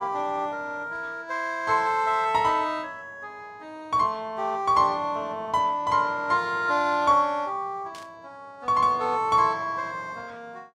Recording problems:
burst of static; at 8 s; peak -15 dB vs average level

